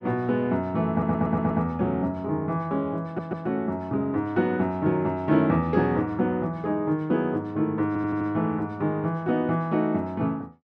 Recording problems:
stutter; at 1 s, at 3 s and at 8 s

